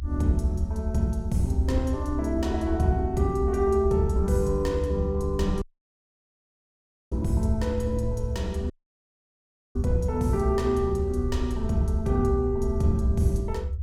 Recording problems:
rumble; below 78 Hz, strongest tone 66 Hz, SNR 4 dB
dropout; at 5.5 s for 1.5 s and at 8.5 s for 1 s

